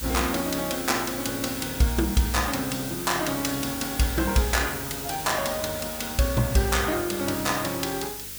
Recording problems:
electrical hum; 50 Hz, harmonics up to 600 Hz, SNR 21 dB
hiss; slope +4 dB per octave, SNR 7 dB

